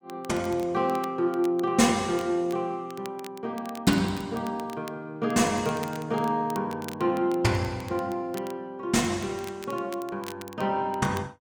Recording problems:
crackle; vinyl, SNR 20 dB

